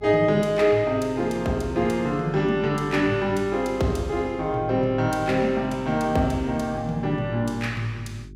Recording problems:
electrical hum; 50 Hz, harmonics up to 400 Hz, SNR 20 dB

